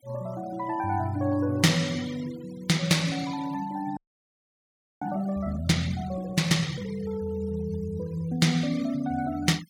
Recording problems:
denoising artefacts; signal-to-artefact ratio 19 dB
audio freezing; at 4 s for 1 s

